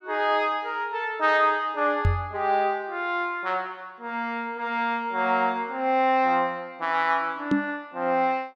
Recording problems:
knock on the microphone; at 2 s and at 7.5 s; peak +6 dB vs average level

